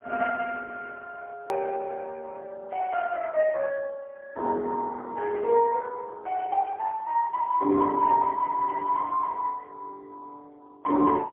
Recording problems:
telephone audio; 260 Hz to 3 kHz, AMR-NB, then MP3
hard cut with a click; at 1.5 s

